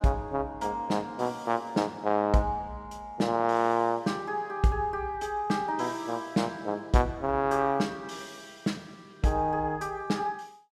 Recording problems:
none

